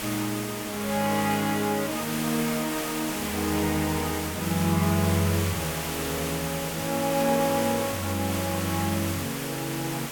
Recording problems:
background hiss; slope -2 dB per octave, SNR 4 dB

